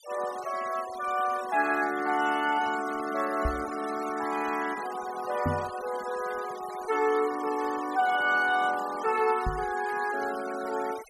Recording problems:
noise reduction artefacts; signal-to-artefact ratio 15 dB
microphone thump; at 3.5 s, at 5.5 s and at 9.5 s; peak +3 dB vs average level

